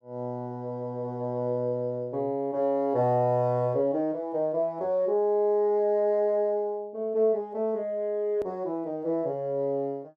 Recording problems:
edit click; at 8.5 s

